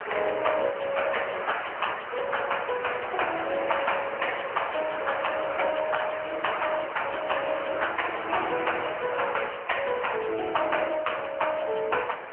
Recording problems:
telephone audio; 370 Hz to 3 kHz, AMR-NB
background hiss; SNR 7 dB

